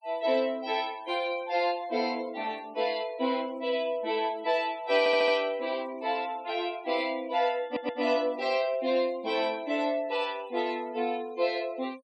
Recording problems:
noise reduction artefacts; signal-to-artefact ratio 22 dB
stutter; at 5 s and at 7.5 s

